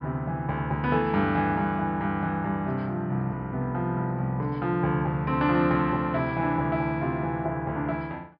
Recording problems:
treble cut off; nothing above 5.5 kHz

